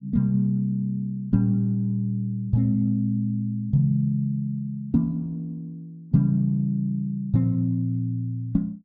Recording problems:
none

